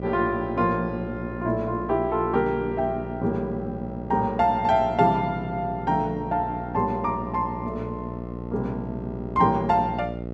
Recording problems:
electrical hum; 60 Hz, harmonics up to 840 Hz, SNR 9 dB

